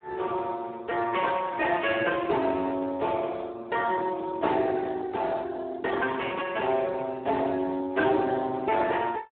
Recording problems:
telephone audio; 280 Hz to 3.7 kHz, Speex

